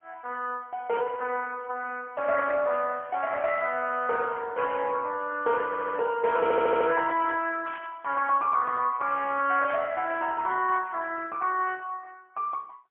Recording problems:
telephone audio; 130 Hz to 3.3 kHz, AMR-NB, then MP3
burst of static; at 1 s, at 7.5 s and at 9.5 s; peak -10 dB vs average level
audio stuttering; at 5.5 s and at 6.5 s

